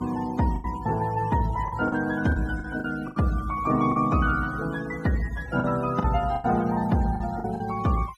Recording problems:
denoising artefacts; signal-to-artefact ratio 19 dB
lost packets; 8% of the sound replaced, filled with the last packet

